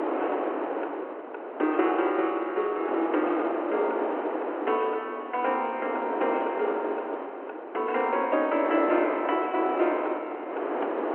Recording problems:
phone line; 260 Hz to 3.2 kHz, G.711
wind on the microphone; below 890 Hz, SNR 4 dB

